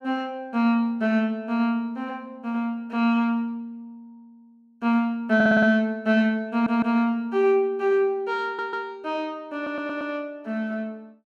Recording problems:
audio stuttering; 4 times, first at 5.5 s

